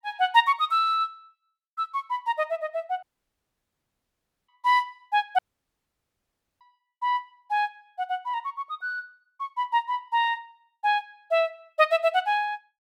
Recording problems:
audio cutting out; at 3 s for 1.5 s and at 5.5 s for 1 s

